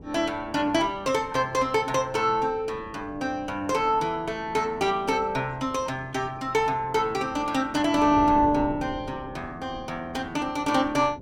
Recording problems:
wind on the microphone; below 370 Hz, SNR 17 dB

